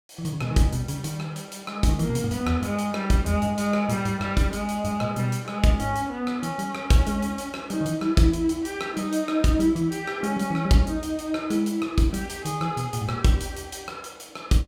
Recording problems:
none

